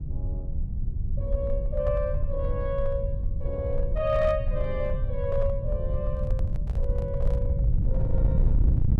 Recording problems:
distorted audio; hard clipping, signal-to-distortion ratio 11 dB
rumble; below 84 Hz, SNR -2 dB
microphone handling noise; from 6 to 7.5 s; peak -10 dB vs average level

